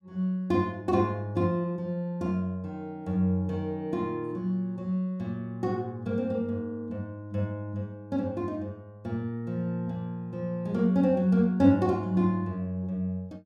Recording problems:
none

